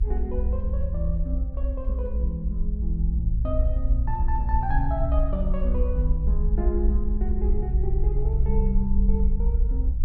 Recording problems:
rumble; below 60 Hz, SNR -5 dB

